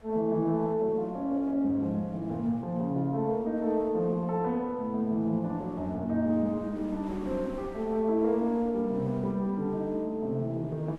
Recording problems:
wind on the microphone; below 760 Hz, SNR 24 dB

